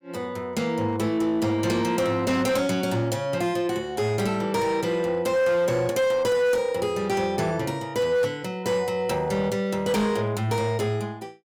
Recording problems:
distortion; hard clipping, signal-to-distortion ratio 11 dB

